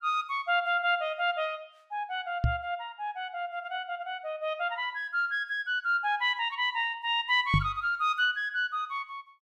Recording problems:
knock on the microphone; at 2.5 s and at 7.5 s; peak +7 dB vs average level

